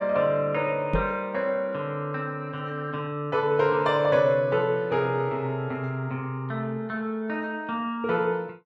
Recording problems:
knock on the microphone; at 1 s; peak +3 dB vs average level

